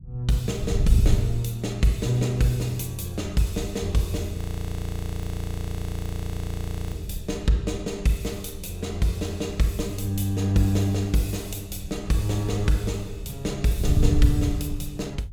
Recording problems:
wind noise; below 110 Hz, SNR 5 dB
audio freezing; at 4.5 s for 2.5 s

